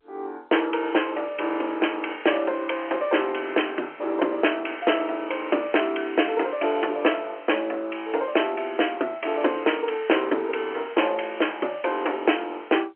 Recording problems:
phone line; 260 Hz to 3.2 kHz, G.711

